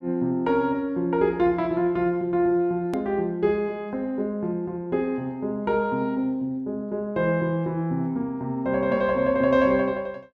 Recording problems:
edit click; at 3 s

